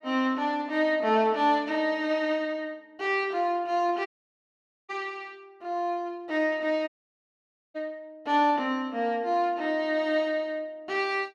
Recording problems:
dropout; at 4 s for 1 s and at 7 s for 1 s

